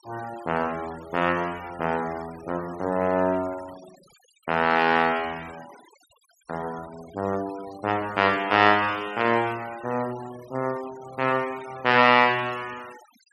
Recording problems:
noise reduction artefacts; signal-to-artefact ratio 20 dB

